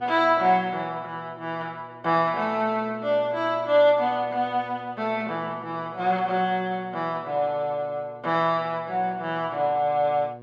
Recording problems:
hum; 60 Hz, harmonics up to 1.2 kHz, SNR 22 dB

